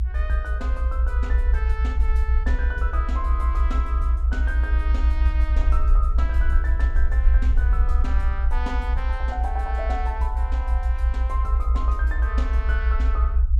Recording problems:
low-frequency rumble; below 62 Hz, SNR -10 dB

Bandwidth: 14.5 kHz